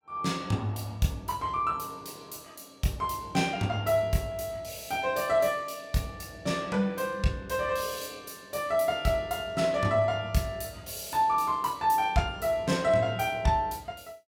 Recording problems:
none

